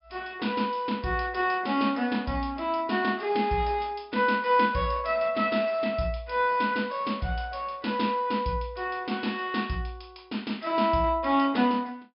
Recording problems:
treble cut off; nothing above 5.5 kHz

